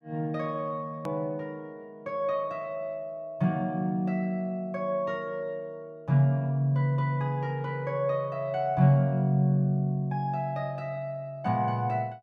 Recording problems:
hard cut with a click; at 1 s

